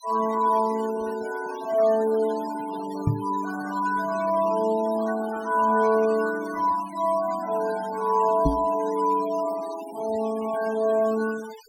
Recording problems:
denoising artefacts; signal-to-artefact ratio 18 dB
knock on the microphone; at 3 s and at 8.5 s; peak +5 dB vs average level

